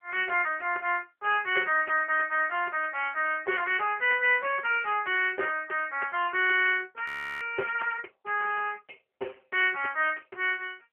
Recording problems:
phone line; 340 Hz to 3.1 kHz, AMR-NB
frozen audio; at 7 s

